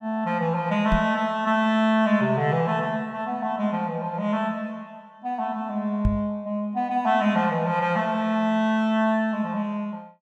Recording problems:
microphone thump; at 1 s and at 6 s; peak +4 dB vs average level

